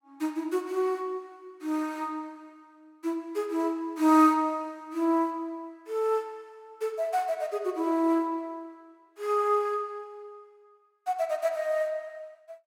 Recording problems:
none

